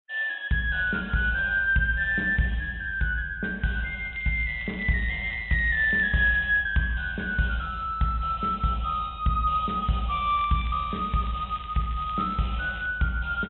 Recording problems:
treble missing; nothing above 3.8 kHz
crackling; from 4 to 6.5 s and from 10 to 13 s; loose cable, SNR 22 dB

